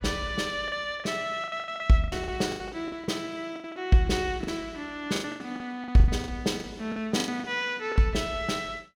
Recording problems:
packet loss; 15% of the sound replaced, filled with the last packet

